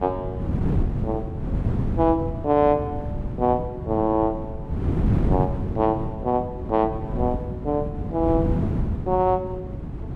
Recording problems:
wind on the microphone; below 220 Hz, SNR 3 dB

